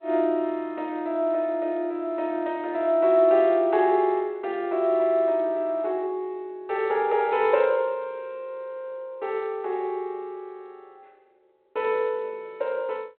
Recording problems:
telephone audio; 260 Hz to 3.4 kHz, G.726

